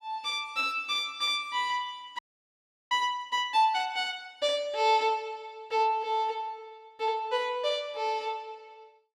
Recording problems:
frozen audio; at 2 s for 0.5 s

